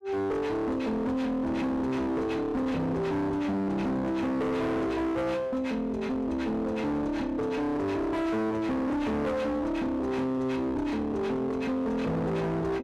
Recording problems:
distorted audio; hard clipping, uneven, signal-to-distortion ratio 5 dB

